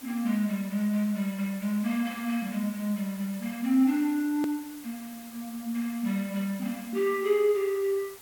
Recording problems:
background hiss; slope -1 dB per octave, SNR 17 dB
click at an edit; at 4.5 s

